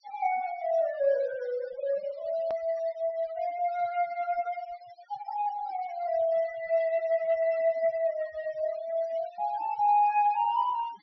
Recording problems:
treble cut off; nothing above 5.8 kHz
denoising artefacts; signal-to-artefact ratio 22 dB
click at an edit; at 2.5 s

